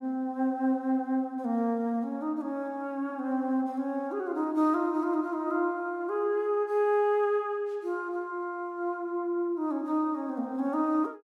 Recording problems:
none

